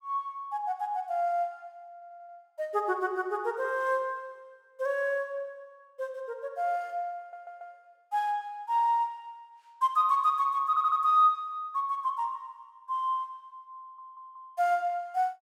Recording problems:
stutter; 4 times, first at 2 s

